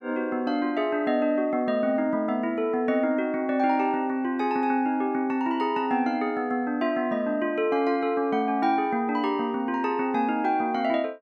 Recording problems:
none

